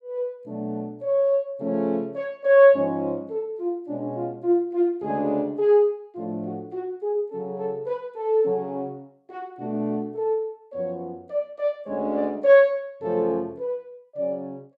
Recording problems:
none

